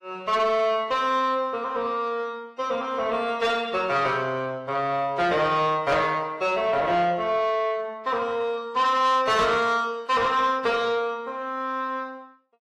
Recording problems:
lossy codec; AAC, log-spectral distance 2 dB, nothing above 13.1 kHz
distortion; soft clipping, signal-to-distortion ratio 12 dB

